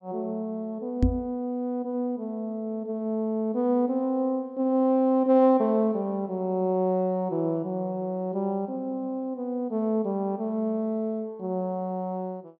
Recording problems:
microphone thump; at 1 s; peak +7 dB vs average level

